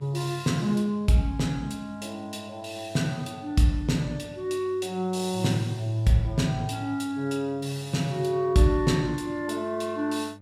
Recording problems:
electrical hum; 50 Hz, harmonics up to 1.2 kHz, SNR 23 dB

